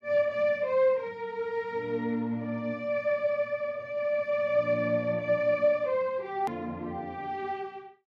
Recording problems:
click at an edit; at 6.5 s

